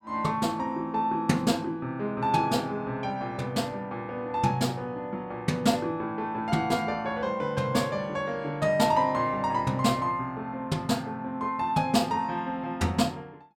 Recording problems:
none

